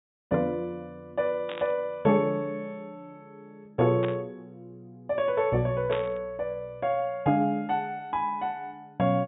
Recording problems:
low-pass filter; nothing above 4 kHz
static burst; at 1.5 s, at 4 s and at 6 s; peak -4 dB vs average level

